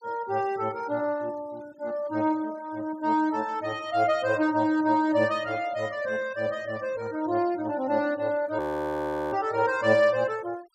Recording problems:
denoising artefacts; signal-to-artefact ratio 25 dB
frozen audio; at 8.5 s for 0.5 s

